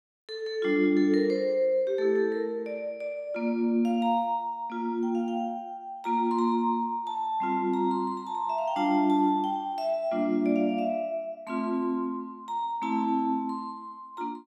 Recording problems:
none

